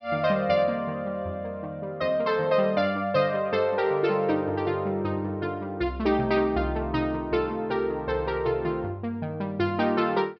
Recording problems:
low-pass filter; nothing above 5.5 kHz

